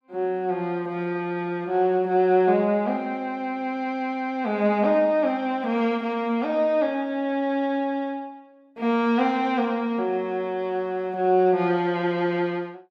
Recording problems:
none

